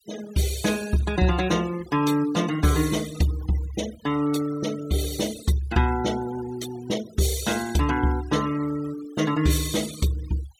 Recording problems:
denoising artefacts; signal-to-artefact ratio 15 dB

